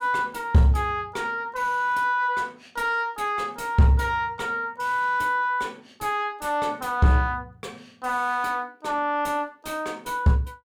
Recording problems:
distorted audio; soft clipping, signal-to-distortion ratio 11 dB

